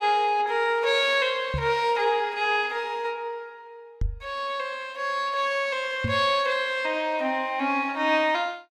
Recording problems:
microphone thump; at 1.5 s, at 4 s and at 6 s; peak 0 dB vs average level

